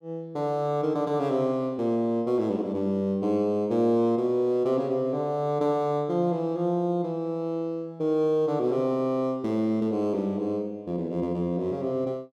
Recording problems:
none

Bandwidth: 14 kHz